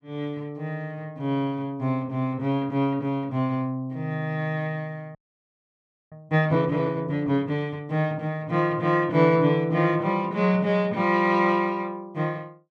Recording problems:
frozen audio; at 5 s for 1 s

